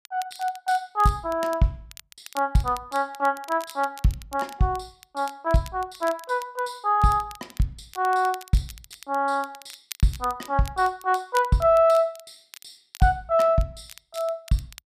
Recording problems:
crackle; vinyl, SNR 20 dB

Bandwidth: 14.5 kHz